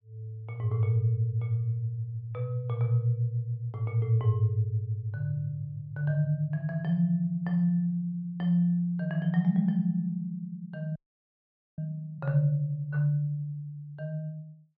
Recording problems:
audio freezing; at 11 s for 1 s

